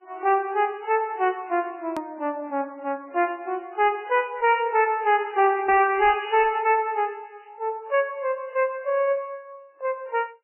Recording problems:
codec artefacts; MP3, then MP3, log-spectral distance 2 dB, nothing above 2.5 kHz
distorted audio; hard clipping, uneven, signal-to-distortion ratio 11 dB
edit click; at 2 s

